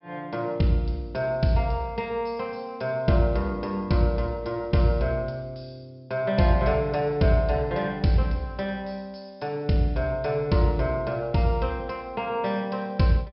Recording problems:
treble missing; nothing above 5.4 kHz

